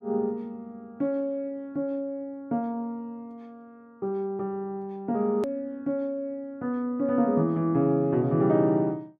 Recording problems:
edit click; at 5.5 s

